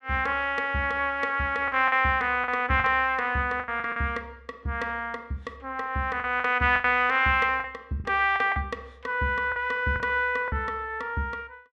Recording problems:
lost packets; 7% of the sound replaced, filled with the last packet

